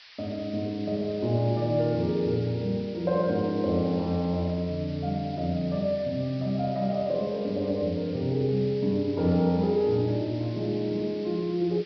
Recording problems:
treble cut off; nothing above 5.5 kHz
background hiss; SNR 20 dB

